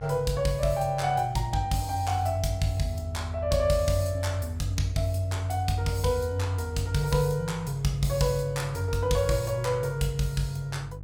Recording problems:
hum; 50 Hz, harmonics up to 500 Hz, SNR 15 dB

